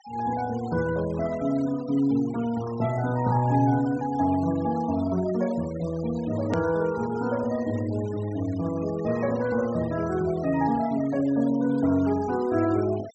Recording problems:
low-pass filter; nothing above 8 kHz
denoising artefacts; signal-to-artefact ratio 19 dB
edit click; at 6.5 s

